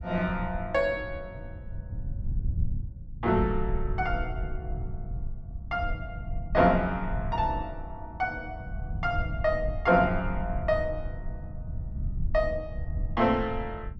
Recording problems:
low-frequency rumble; below 96 Hz, SNR 7 dB

